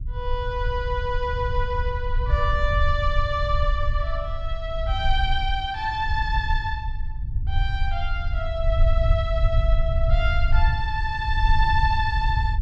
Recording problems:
rumble; below 70 Hz, SNR -1 dB

